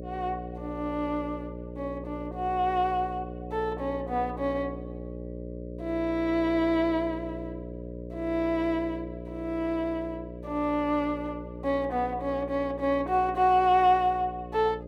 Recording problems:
hum; 60 Hz, harmonics up to 600 Hz, SNR 11 dB

